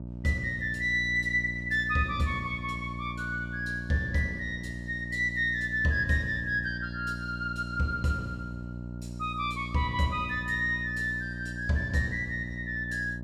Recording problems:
hum; 60 Hz, harmonics up to 660 Hz, SNR 9 dB

